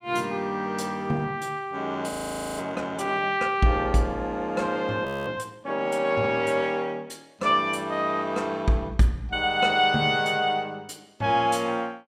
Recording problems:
frozen audio; at 2 s and at 5 s

